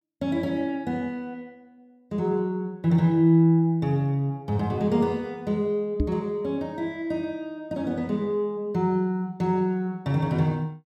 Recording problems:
microphone bump; at 6 s; peak +4 dB vs average level

